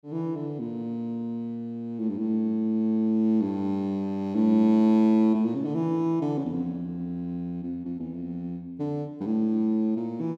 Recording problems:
none

